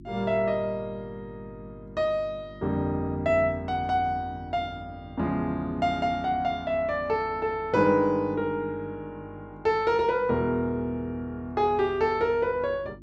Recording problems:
hum; 50 Hz, harmonics up to 350 Hz, SNR 21 dB

